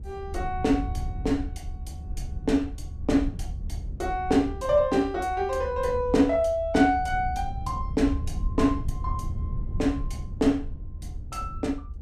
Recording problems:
rumble; below 88 Hz, SNR 9 dB

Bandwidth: 15 kHz